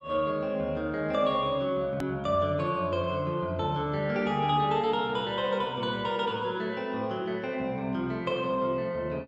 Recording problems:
click at an edit; at 2 s

